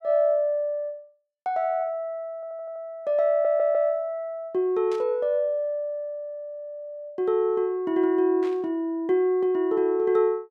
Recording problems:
audio stuttering; at 2.5 s and at 3.5 s
burst of static; at 5 s and at 8.5 s; peak -15 dB vs average level

